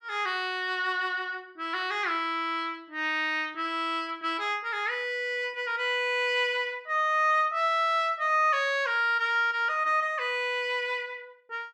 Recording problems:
none

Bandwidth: 14 kHz